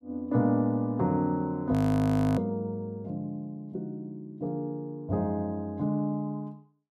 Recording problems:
frozen audio; at 1.5 s for 0.5 s

